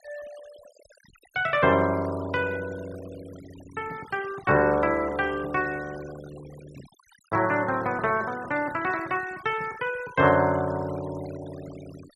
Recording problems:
denoising artefacts; signal-to-artefact ratio 20 dB

